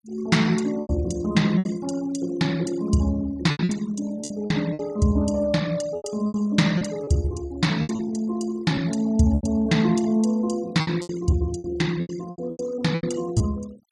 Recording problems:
denoising artefacts; signal-to-artefact ratio 20 dB
lost packets; 11% of the sound replaced, filled with repeated pitch periods

